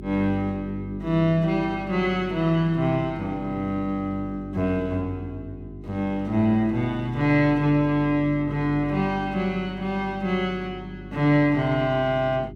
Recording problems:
electrical hum; 50 Hz, harmonics up to 400 Hz, SNR 14 dB

